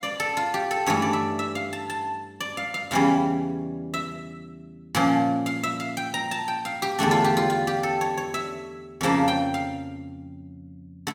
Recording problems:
none

